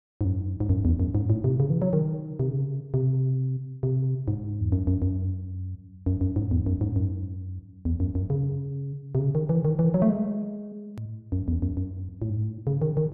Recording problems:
hard cut with a click; at 11 s

